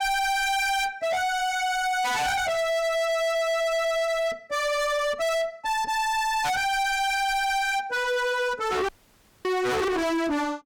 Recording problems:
distortion; hard clipping, signal-to-distortion ratio 6 dB
audio cutting out; at 9 s for 0.5 s

